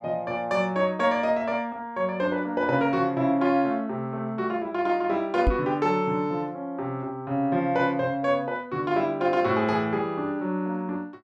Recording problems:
microphone bump; at 5.5 s; peak +5 dB vs average level

